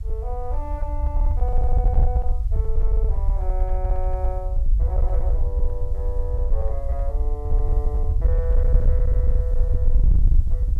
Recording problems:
distorted audio; hard clipping, uneven, signal-to-distortion ratio 11 dB
background hiss; SNR 26 dB
low-frequency rumble; below 60 Hz, SNR -11 dB

